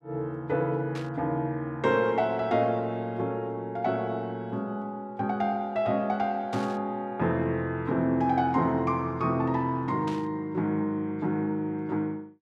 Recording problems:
burst of static; at 1 s, at 6.5 s and at 10 s; peak -10 dB vs average level

